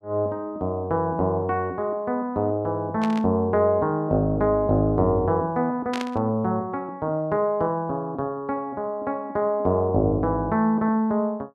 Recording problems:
static burst; at 3 s and at 6 s; peak -4 dB vs average level

